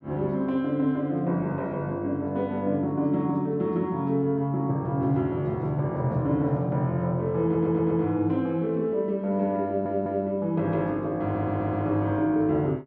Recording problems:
audio stuttering; at 7.5 s, at 9.5 s and at 11 s

